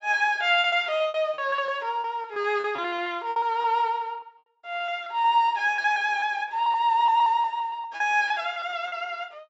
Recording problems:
low-pass filter; nothing above 8 kHz
lost packets; 13% of the sound replaced, filled with repeated pitch periods

